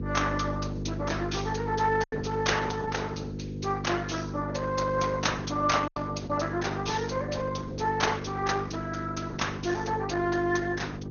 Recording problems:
treble cut off; nothing above 6.5 kHz
lossy compression; Opus, log-spectral distance 5 dB
hum; 50 Hz, harmonics up to 500 Hz, SNR 5 dB
lost packets; 1.5% of the sound replaced, filled with silence

